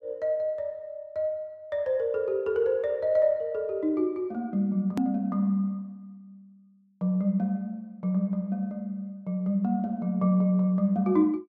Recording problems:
click at an edit; at 5 s

